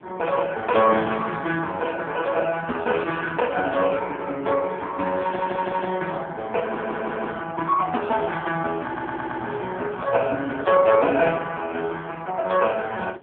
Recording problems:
telephone audio; 170 Hz to 3.4 kHz, AMR-NB
wind on the microphone; below 820 Hz, SNR 21 dB
audio stuttering; at 5 s, at 6.5 s and at 9 s

